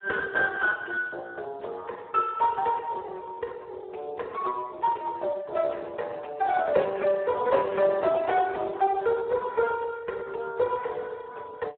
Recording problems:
telephone audio; 340 Hz to 4 kHz, Speex

